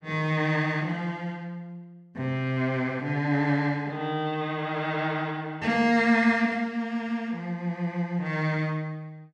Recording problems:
none

